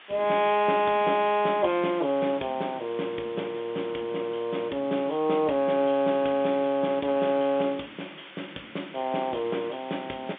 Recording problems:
telephone audio; 170 Hz to 3.6 kHz, G.711
hiss; SNR 20 dB

